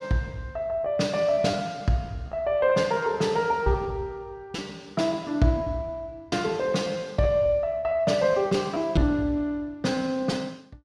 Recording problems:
packet loss; 6% of the sound replaced, filled with repeated pitch periods

